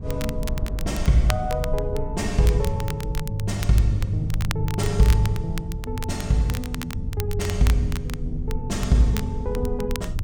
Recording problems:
rumble; below 94 Hz, SNR 6 dB
wind on the microphone; below 430 Hz, SNR 24 dB
crackle; vinyl, SNR 13 dB

